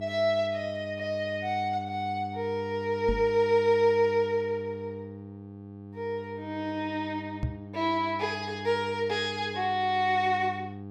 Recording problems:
hum; 50 Hz, harmonics up to 900 Hz, SNR 13 dB
microphone bump; at 3 s and at 7.5 s; peak +1 dB vs average level

